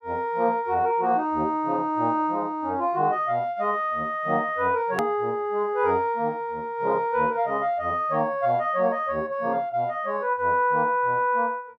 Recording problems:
edit click; at 5 s

